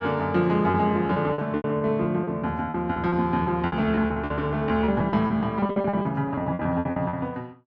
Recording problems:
packet loss; 18% of the sound replaced, filled with repeated pitch periods

